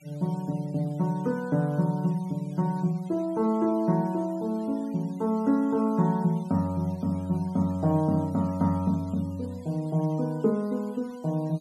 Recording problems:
denoising artefacts; signal-to-artefact ratio 27 dB

